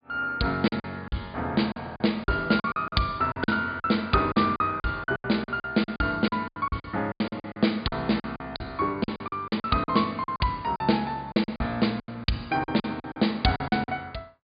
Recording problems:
treble missing; nothing above 4.9 kHz
packet loss; 16% of the sound replaced, filled with silence

